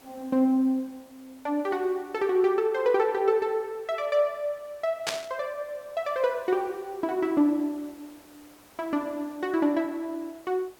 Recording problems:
hiss; slope -4 dB per octave, SNR 27 dB
burst of static; at 5 s; peak +3 dB vs average level

